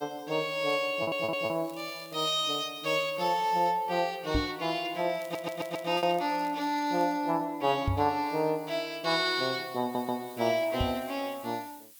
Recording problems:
hiss; SNR 23 dB
lost packets; 0.9% of the sound replaced, filled with repeated pitch periods
crackling; at 0.5 s, at 1.5 s and from 5 to 7 s; loose cable, SNR 24 dB
stutter; at 1 s, at 5 s and at 10 s
microphone thump; at 4.5 s, at 8 s and at 11 s; peak +4 dB vs average level

